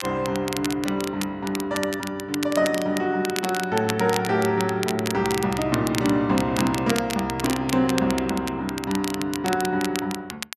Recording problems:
crackling; vinyl, SNR 9 dB

